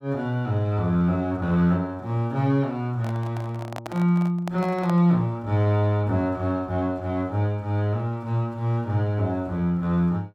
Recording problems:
handling noise; from 3 to 5 s; peak -6 dB vs average level

